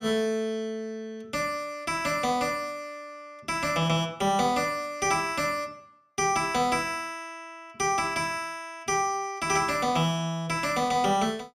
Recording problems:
none

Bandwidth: 15 kHz